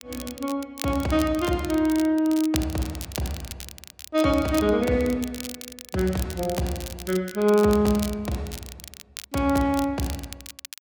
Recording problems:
crackle; vinyl, SNR 14 dB

